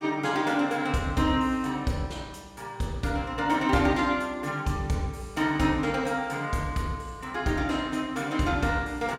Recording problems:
none

